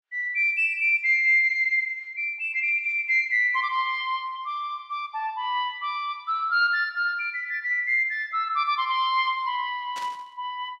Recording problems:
burst of static; at 10 s; peak -11 dB vs average level

